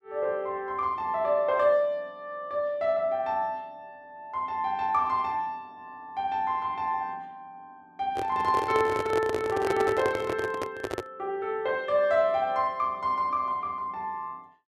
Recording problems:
handling noise; from 8 to 11 s; peak +3 dB vs average level

